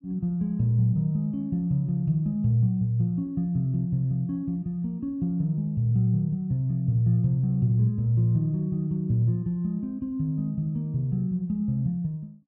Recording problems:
none

